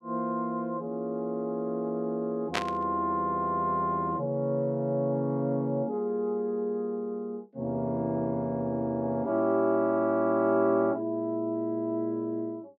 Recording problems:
burst of static; at 2.5 s; peak +4 dB vs average level

